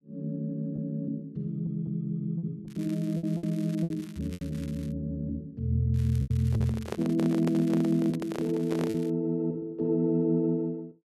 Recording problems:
lost packets; 5% of the sound replaced, filled with repeated pitch periods
crackle; from 2.5 to 5 s, from 6 to 8.5 s and at 8.5 s; loose cable, SNR 23 dB
handling noise; from 6.5 to 9 s; peak -1 dB vs average level

